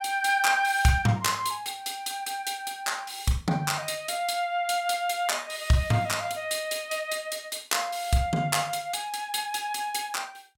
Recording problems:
none

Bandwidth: 17 kHz